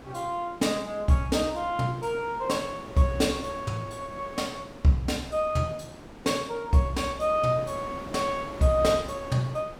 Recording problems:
wind noise; below 1 kHz, SNR 16 dB

